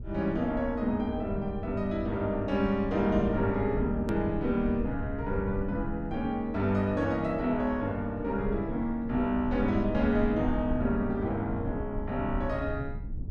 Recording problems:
rumble; below 120 Hz, SNR 9 dB
edit click; at 4 s

